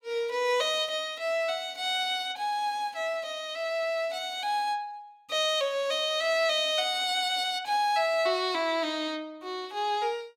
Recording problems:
none

